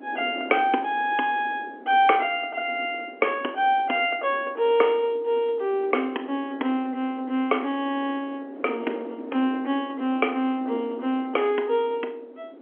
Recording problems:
phone line; 220 Hz to 3.3 kHz, G.711
wind noise; below 510 Hz, SNR 17 dB

